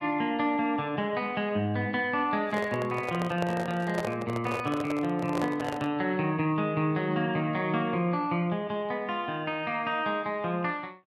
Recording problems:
handling noise; from 2.5 to 6 s; peak 0 dB vs average level

